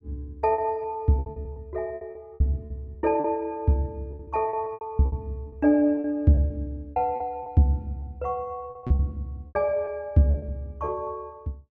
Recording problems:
lost packets; 13% of the sound replaced, filled with repeated pitch periods

